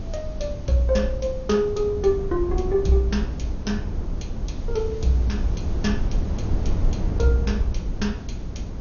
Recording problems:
lossy codec; MP2, log-spectral distance 2 dB, nothing above 6.7 kHz
background hiss; slope +1 dB per octave, SNR 28 dB
wind on the microphone; below 100 Hz, SNR 5 dB

